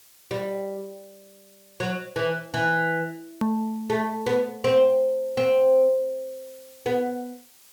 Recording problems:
hiss; slope +1 dB per octave, SNR 26 dB
hard cut with a click; at 3.5 s

